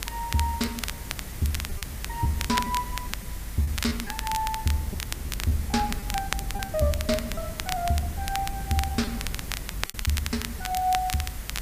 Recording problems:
background hiss; slope -2 dB per octave, SNR 12 dB
low-frequency rumble; below 94 Hz, SNR 9 dB
wind on the microphone; below 360 Hz, SNR 19 dB
crackling; vinyl, SNR 6 dB
packet loss; 7% of the sound replaced, filled with repeated pitch periods

